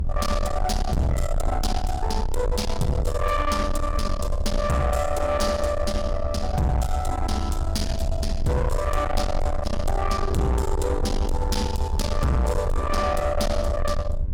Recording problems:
distorted audio; soft clipping, signal-to-distortion ratio 7 dB
hum; 50 Hz, harmonics up to 2.1 kHz, SNR 25 dB
rumble; below 88 Hz, SNR 3 dB

